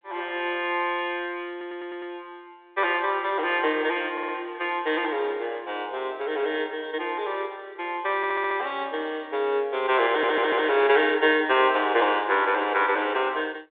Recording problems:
telephone audio; 280 Hz to 3.6 kHz, G.726
stutter; 4 times, first at 1.5 s

